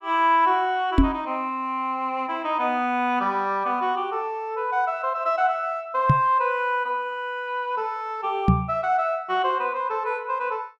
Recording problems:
knock on the microphone; at 1 s, at 6 s and at 8.5 s; peak +10 dB vs average level

